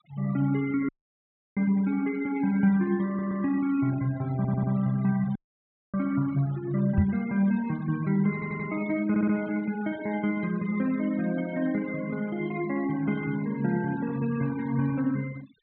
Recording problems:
treble cut off; nothing above 4.1 kHz
denoising artefacts; signal-to-artefact ratio 19 dB
dropout; at 1 s for 0.5 s and at 5.5 s for 0.5 s
stutter; 4 times, first at 3 s
knock on the microphone; at 7 s; peak +7 dB vs average level

